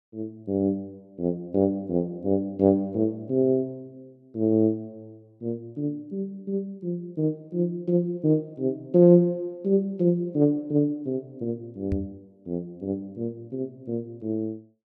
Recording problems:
microphone thump; at 12 s; peak +1 dB vs average level

